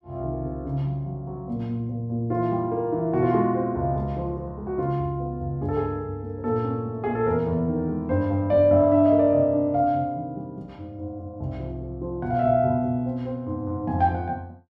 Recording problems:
none

